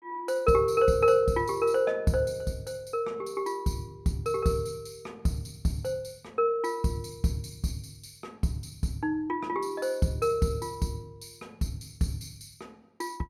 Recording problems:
none

